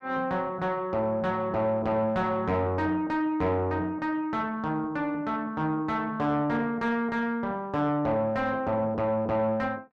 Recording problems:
distortion; soft clipping, signal-to-distortion ratio 10 dB

